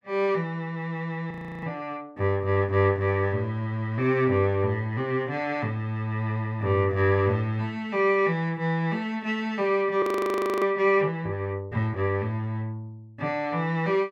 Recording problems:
frozen audio; at 1.5 s and at 10 s for 0.5 s

